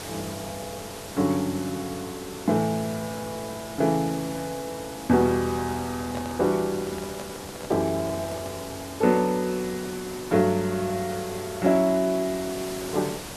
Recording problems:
hiss; slope -3 dB per octave, SNR 12 dB
handling noise; from 6 to 8.5 s; peak -5 dB vs average level

